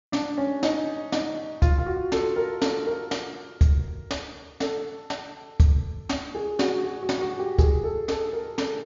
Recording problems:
treble missing; nothing above 7.2 kHz

